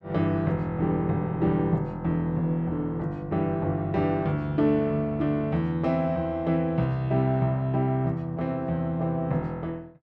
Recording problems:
none

